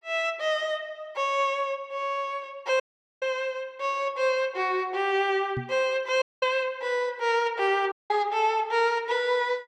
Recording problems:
dropout; at 3 s, at 6 s and at 8 s
knock on the microphone; at 5.5 s; peak -3 dB vs average level

